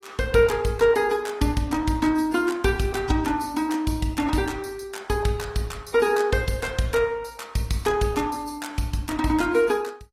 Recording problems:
lossy codec; AAC, log-spectral distance 3 dB, nothing above 14.3 kHz

